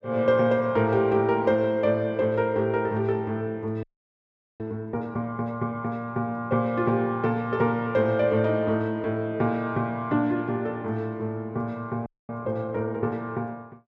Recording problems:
audio freezing; at 4 s for 1 s and at 12 s

